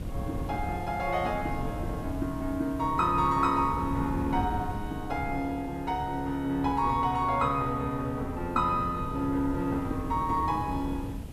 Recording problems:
background hiss; SNR 26 dB
wind on the microphone; below 190 Hz, SNR 9 dB

